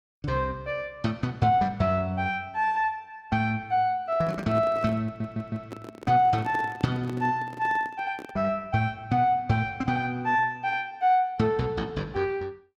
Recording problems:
microphone handling noise; from 4 to 8.5 s; peak -7 dB vs average level
audio stuttering; at 5 s

